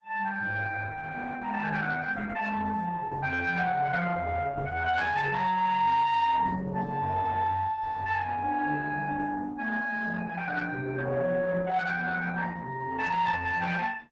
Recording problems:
lossy codec; Opus, log-spectral distance 4 dB
distortion; soft clipping, signal-to-distortion ratio 12 dB

